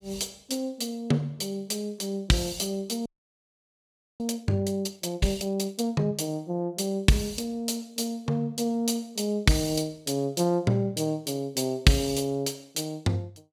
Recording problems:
audio freezing; at 3 s for 1 s

